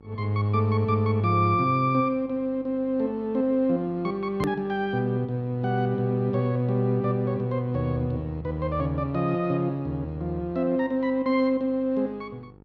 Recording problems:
mains hum; 50 Hz, harmonics up to 1.4 kHz, SNR 25 dB
edit click; at 4.5 s

